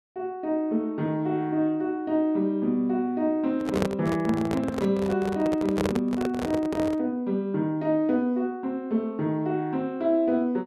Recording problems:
handling noise; from 3.5 to 7 s; peak +3 dB vs average level

